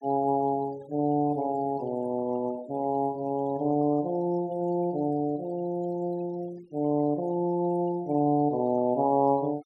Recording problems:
noise reduction artefacts; signal-to-artefact ratio 23 dB

